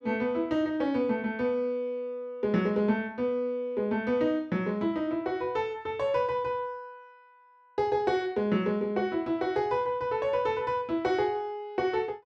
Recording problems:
none

